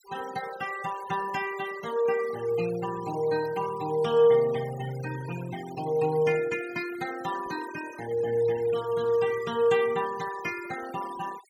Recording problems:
denoising artefacts; signal-to-artefact ratio 15 dB

